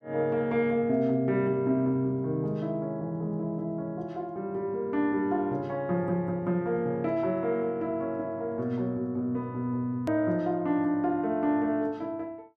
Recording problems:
edit click; at 10 s

